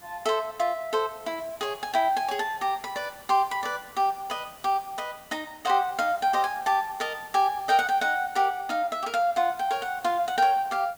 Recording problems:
background hiss; slope -3 dB per octave, SNR 22 dB

